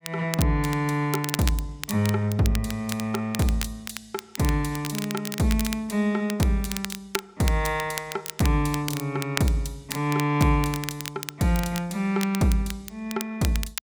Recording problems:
crackling; vinyl, SNR 10 dB

